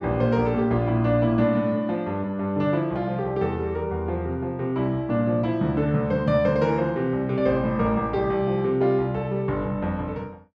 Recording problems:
none

